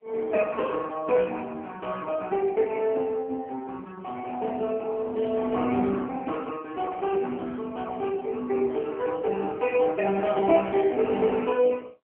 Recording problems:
telephone audio; 220 Hz to 3.5 kHz, AMR-NB

